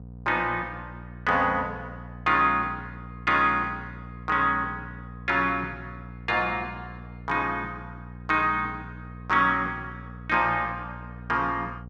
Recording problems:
hum; 60 Hz, harmonics up to 720 Hz, SNR 16 dB

